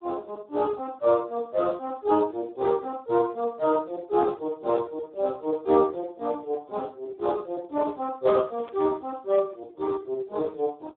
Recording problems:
telephone audio; 260 Hz to 2.1 kHz, Speex
burst of static; at 8.5 s; peak -16 dB vs average level

